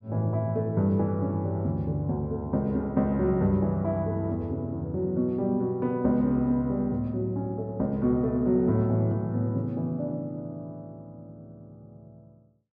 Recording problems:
none

